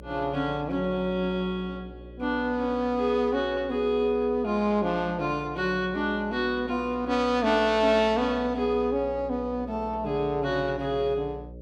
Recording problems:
hum; 60 Hz, harmonics up to 600 Hz, SNR 17 dB

